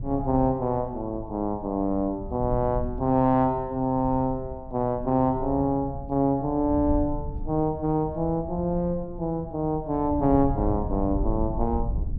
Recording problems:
low-frequency rumble; below 98 Hz, SNR 10 dB

